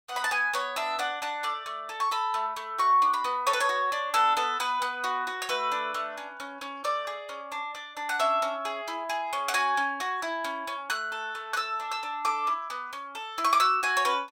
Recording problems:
none

